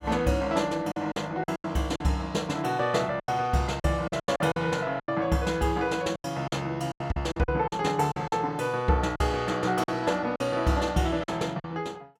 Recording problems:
packet loss; 11% of the sound replaced, filled with silence

